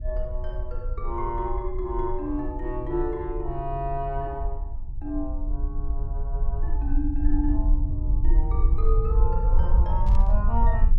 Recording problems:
rumble; below 54 Hz, SNR -4 dB
burst of static; at 10 s; peak -13 dB vs average level

